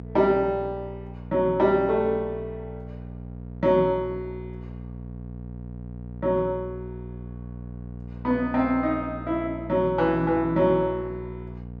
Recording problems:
hum; 60 Hz, harmonics up to 720 Hz, SNR 14 dB

